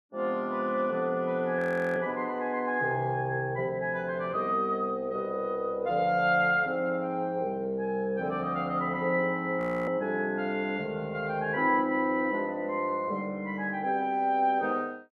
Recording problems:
audio freezing; at 1.5 s and at 9.5 s

